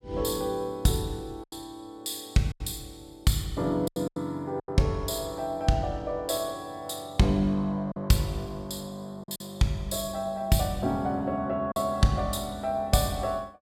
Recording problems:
packet loss; 4% of the sound replaced, filled with silence

